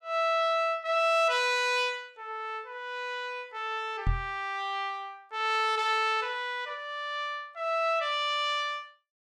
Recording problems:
knock on the microphone; at 4 s; peak +4 dB vs average level

